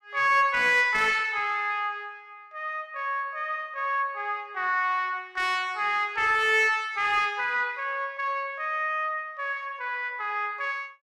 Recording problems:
distorted audio; soft clipping, signal-to-distortion ratio 10 dB

